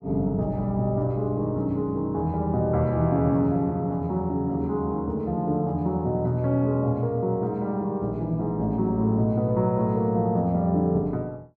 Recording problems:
none

